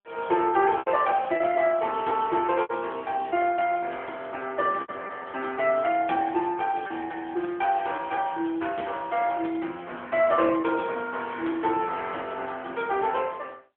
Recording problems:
telephone audio; 280 Hz to 3.3 kHz, AMR-NB
lost packets; 4% of the sound replaced, filled with repeated pitch periods

